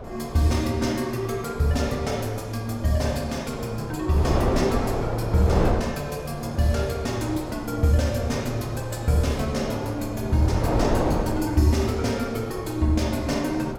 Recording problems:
wind on the microphone; below 630 Hz, SNR 6 dB

